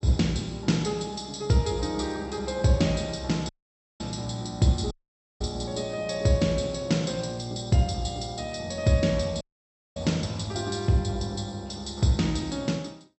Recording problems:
treble missing; nothing above 7.9 kHz
audio cutting out; at 3.5 s for 0.5 s, at 5 s and at 9.5 s for 0.5 s

